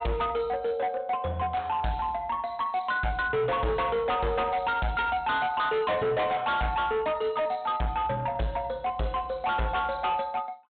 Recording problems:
low-pass filter; nothing above 4 kHz
distorted audio; hard clipping, uneven, signal-to-distortion ratio 7 dB

